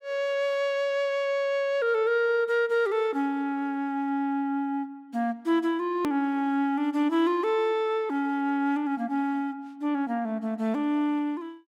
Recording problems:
edit click; at 6 s

